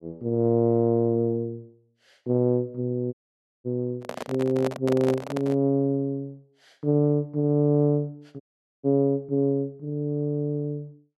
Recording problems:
audio cutting out; at 3 s for 0.5 s and at 8.5 s
microphone handling noise; from 4 to 5.5 s; peak -2 dB vs average level

